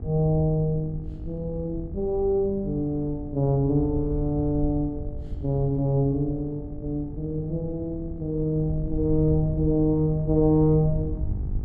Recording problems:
hum; 50 Hz, harmonics up to 900 Hz, SNR 18 dB
wind noise; below 88 Hz, SNR 10 dB

